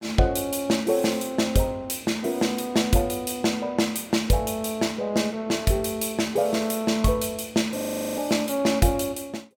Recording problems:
frozen audio; at 8 s

